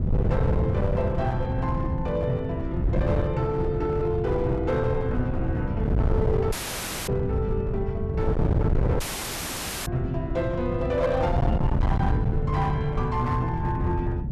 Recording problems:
distortion; hard clipping, uneven, signal-to-distortion ratio 7 dB
wind noise; below 160 Hz, SNR 0 dB
dropout; at 6.5 s for 0.5 s and at 9 s for 1 s

